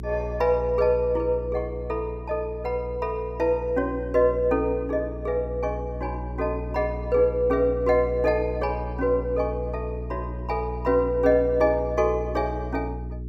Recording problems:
hum; 60 Hz, harmonics up to 420 Hz, SNR 9 dB

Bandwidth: 14.5 kHz